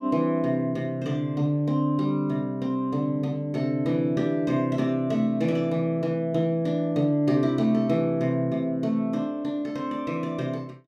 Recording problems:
none

